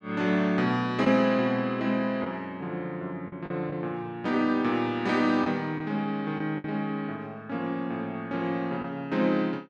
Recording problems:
packet loss; 3% of the sound replaced, filled with the last packet

